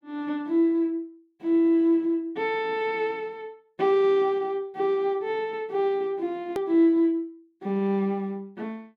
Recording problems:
hard cut with a click; at 6.5 s

